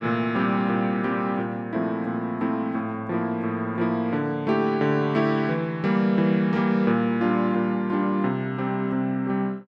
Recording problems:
none

